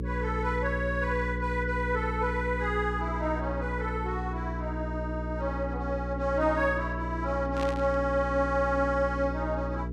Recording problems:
electrical hum; 60 Hz, harmonics up to 480 Hz, SNR 4 dB
burst of static; at 7.5 s; peak -5 dB vs average level

